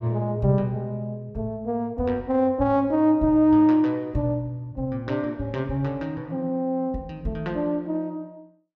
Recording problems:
none

